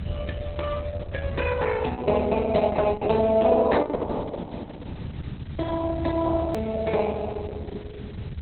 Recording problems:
codec artefacts; Opus, log-spectral distance 8 dB
background hiss; SNR 27 dB
low-frequency rumble; below 120 Hz, strongest tone 78 Hz, SNR 8 dB
hard cut with a click; at 6.5 s

